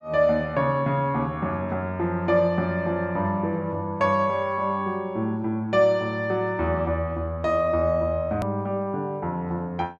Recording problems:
click at an edit; at 8.5 s

